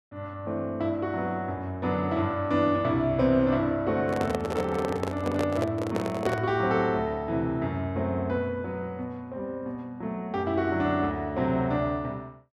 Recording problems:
handling noise; from 4 to 6.5 s; peak +2 dB vs average level

